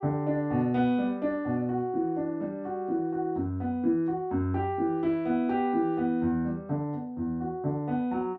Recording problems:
none

